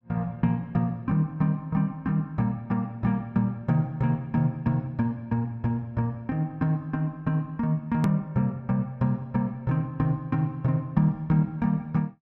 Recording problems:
click at an edit; at 8 s

